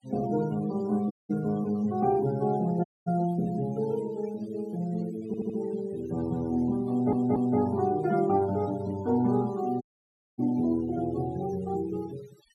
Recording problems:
noise reduction artefacts; signal-to-artefact ratio 21 dB
dropout; at 1 s, at 3 s and at 10 s for 0.5 s
stutter; at 5.5 s and at 7 s

